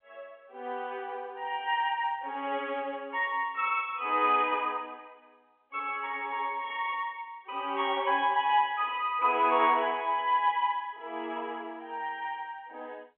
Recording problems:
telephone audio; 260 Hz to 3.7 kHz, G.711

